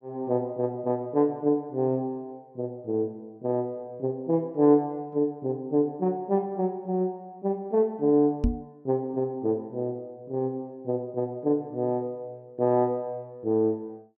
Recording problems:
knock on the microphone; at 8.5 s; peak +6 dB vs average level

